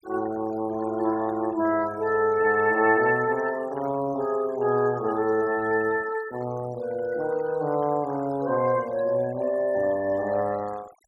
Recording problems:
denoising artefacts; signal-to-artefact ratio 21 dB

